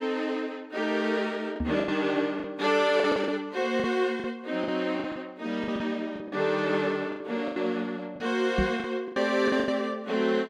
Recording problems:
lost packets; 10% of the sound replaced, filled with the last packet
microphone bump; at 1.5 s and at 8.5 s; peak +4 dB vs average level

